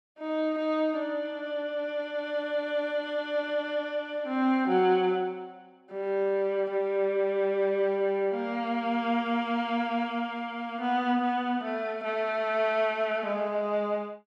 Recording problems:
none

